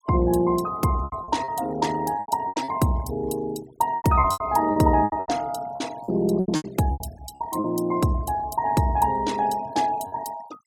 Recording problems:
denoising artefacts; signal-to-artefact ratio 19 dB
packet loss; 11% of the sound replaced, filled with repeated pitch periods

